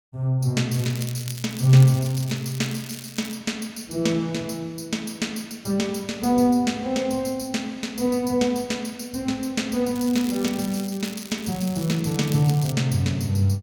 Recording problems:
crackle; from 0.5 to 3.5 s and from 10 to 13 s; loose cable, SNR 15 dB

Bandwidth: 18.5 kHz